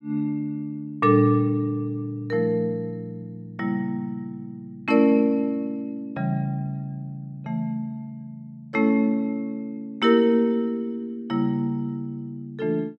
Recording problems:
none

